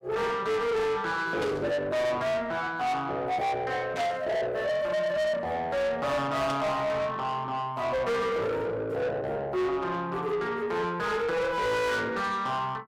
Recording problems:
distorted audio; soft clipping, signal-to-distortion ratio 7 dB
burst of static; at 1.5 s, at 4 s and at 6.5 s; peak -5 dB vs average level

